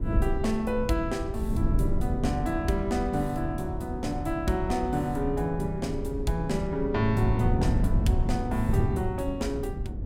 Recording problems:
wind on the microphone; below 140 Hz, SNR 2 dB

